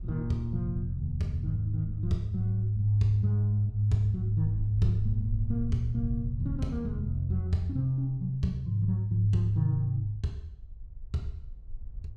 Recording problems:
wind noise; below 60 Hz, SNR 14 dB

